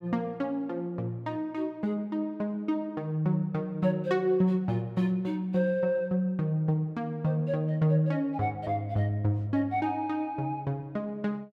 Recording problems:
none

